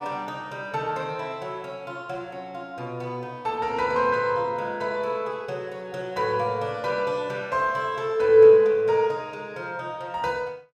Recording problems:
none

